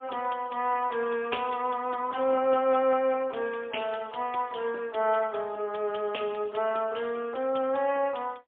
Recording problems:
phone line; 320 Hz to 3.4 kHz, AMR-NB, then MP3

